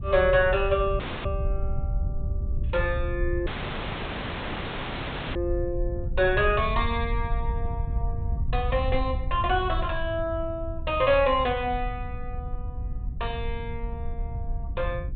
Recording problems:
treble cut off; nothing above 4 kHz
wind noise; below 78 Hz, SNR 5 dB
audio cutting out; at 1 s and at 3.5 s for 2 s

